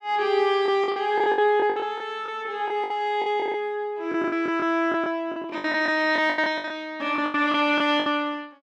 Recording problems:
packet loss; 15% of the sound replaced, filled with the last packet

